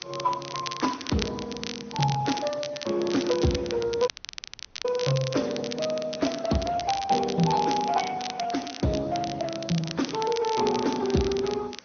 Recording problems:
treble missing; nothing above 6.3 kHz
lossy codec; Speex, log-spectral distance 6 dB
hiss; slope -3 dB per octave, SNR 25 dB
crackling; vinyl, SNR 9 dB
dropout; at 4 s for 1 s

